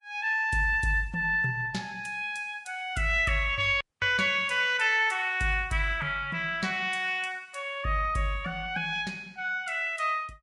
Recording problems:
codec artefacts; Vorbis, log-spectral distance 2 dB, nothing above 10.4 kHz
audio cutting out; at 4 s

